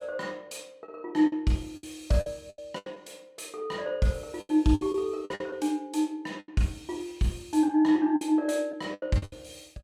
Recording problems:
packet loss; 10% of the sound replaced, filled with the last packet

